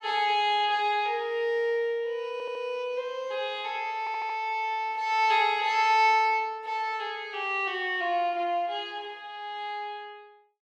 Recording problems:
audio stuttering; at 2.5 s and at 4 s

